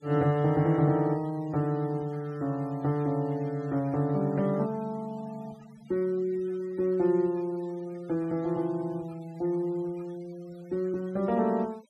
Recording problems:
noise reduction artefacts; signal-to-artefact ratio 26 dB

